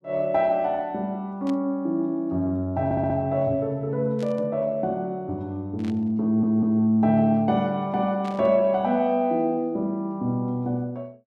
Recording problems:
burst of static; 4 times, first at 1.5 s; peak -15 dB vs average level
audio stuttering; at 3 s and at 6 s

